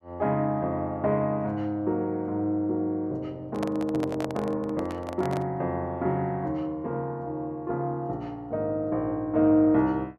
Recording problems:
handling noise; from 3.5 to 5.5 s; peak -2 dB vs average level

